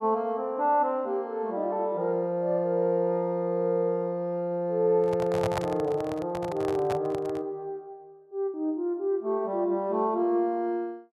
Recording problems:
handling noise; from 5 to 7.5 s; peak +1 dB vs average level

